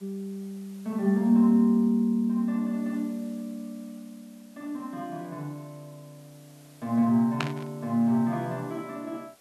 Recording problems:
hiss; slope -2 dB per octave, SNR 29 dB
static burst; at 7.5 s; peak +1 dB vs average level

